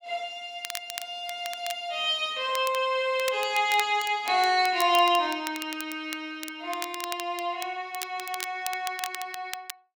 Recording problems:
crackle; vinyl, SNR 11 dB

